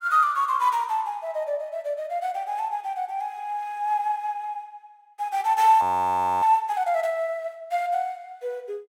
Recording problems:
frozen audio; at 6 s for 0.5 s

